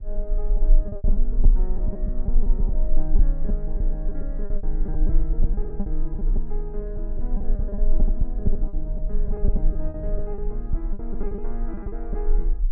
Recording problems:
low-frequency rumble; below 32 Hz, strongest tone 18 Hz, SNR -9 dB
wind noise; below 130 Hz, SNR 8 dB
packet loss; 12% of the sound replaced, filled with repeated pitch periods

